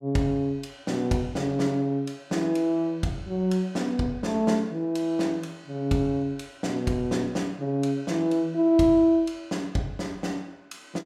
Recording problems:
none

